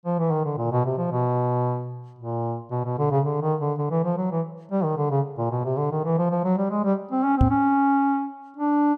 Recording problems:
microphone bump; at 7.5 s; peak +7 dB vs average level

